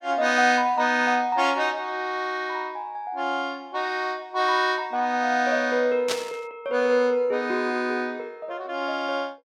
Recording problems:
burst of static; at 6 s; peak +1 dB vs average level

